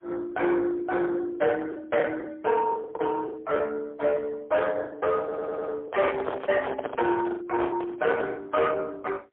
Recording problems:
phone line; 300 Hz to 3.4 kHz, AMR-NB, then MP3
distorted audio; soft clipping, signal-to-distortion ratio 12 dB
packet loss; 10% of the sound replaced, filled with the last packet
audio stuttering; at 5 s
microphone handling noise; from 6 to 8.5 s; peak +1 dB vs average level

